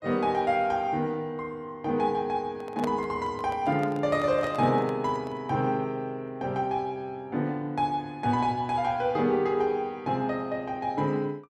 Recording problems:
handling noise; from 2.5 to 5.5 s; peak -3 dB vs average level

